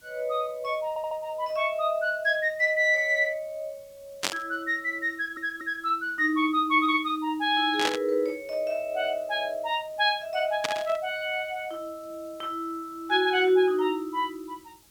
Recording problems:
hiss; SNR 29 dB
stutter; at 1 s and at 5 s
static burst; at 4 s, at 8 s and at 11 s; peak +4 dB vs average level

